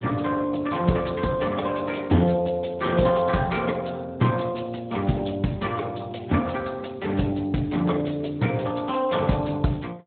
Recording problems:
treble cut off; nothing above 3.9 kHz
codec artefacts; Speex, log-spectral distance 5 dB

